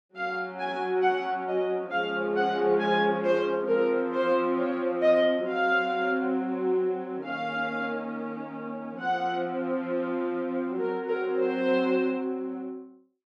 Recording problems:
none

